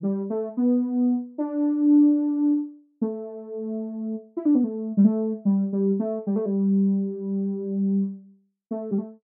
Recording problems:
none

